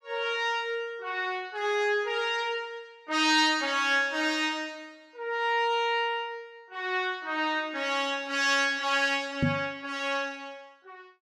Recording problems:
microphone bump; at 9.5 s; peak +5 dB vs average level

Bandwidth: 14.5 kHz